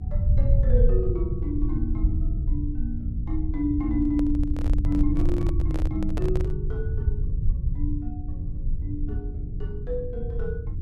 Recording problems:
hum; 50 Hz, harmonics up to 450 Hz, SNR 14 dB
rumble; below 78 Hz, SNR -3 dB
microphone handling noise; from 4 to 6.5 s; peak 0 dB vs average level

